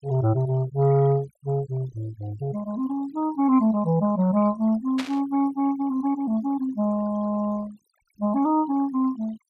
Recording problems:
denoising artefacts; signal-to-artefact ratio 22 dB
static burst; at 5 s; peak -4 dB vs average level

